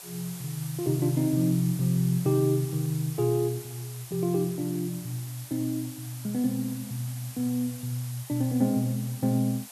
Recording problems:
background hiss; SNR 14 dB

